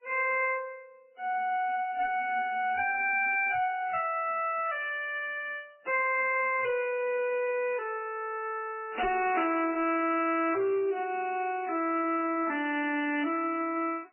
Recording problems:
lossy compression; MP3, then MP3, log-spectral distance 3 dB, nothing above 2.4 kHz
distortion; hard clipping, signal-to-distortion ratio 11 dB

